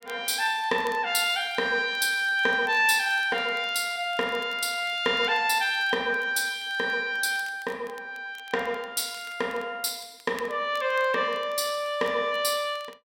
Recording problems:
crackling; vinyl, SNR 27 dB

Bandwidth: 16.5 kHz